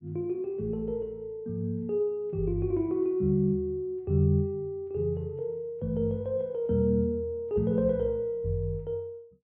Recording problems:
none

